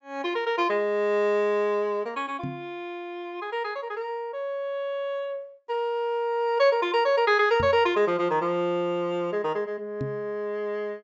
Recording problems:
low-pass filter; nothing above 8 kHz
microphone thump; at 2.5 s, at 7.5 s and at 10 s; peak -3 dB vs average level

